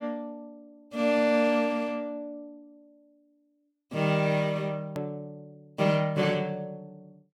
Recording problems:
edit click; at 5 s

